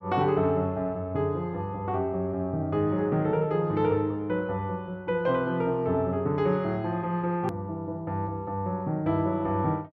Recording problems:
hard cut with a click; at 7.5 s

